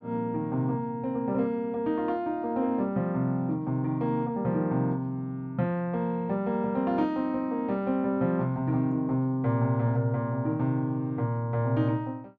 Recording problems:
none

